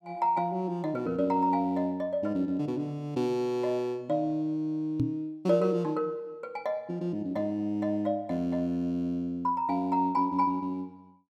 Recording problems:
knock on the microphone; at 5 s; peak +4 dB vs average level

